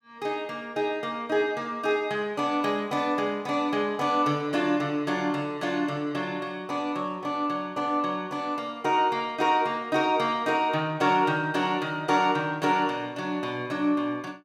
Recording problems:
none

